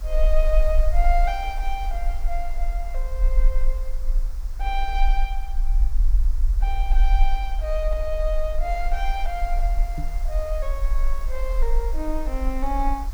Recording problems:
hiss; SNR 18 dB
rumble; below 40 Hz, strongest tone 20 Hz, SNR -4 dB
knock on the microphone; at 10 s; peak +2 dB vs average level

